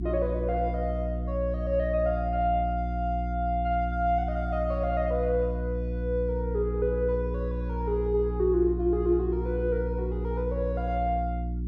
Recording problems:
mains hum; 60 Hz, harmonics up to 360 Hz, SNR 3 dB

